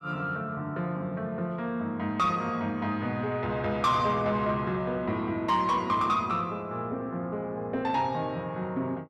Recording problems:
distortion; soft clipping, signal-to-distortion ratio 11 dB

